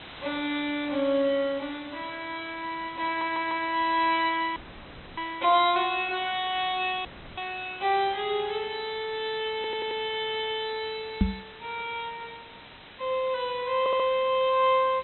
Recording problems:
treble cut off; nothing above 4 kHz
background hiss; SNR 18 dB
audio stuttering; at 3 s, at 9.5 s and at 14 s
audio cutting out; at 4.5 s for 0.5 s and at 7 s
microphone bump; at 11 s; peak +8 dB vs average level

